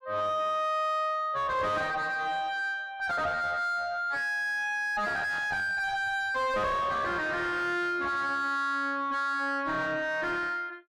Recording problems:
distorted audio; soft clipping, signal-to-distortion ratio 7 dB

